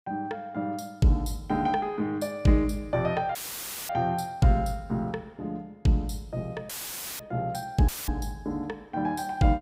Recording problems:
audio cutting out; at 3.5 s for 0.5 s, at 6.5 s for 0.5 s and at 8 s; filled with static

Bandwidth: 15.5 kHz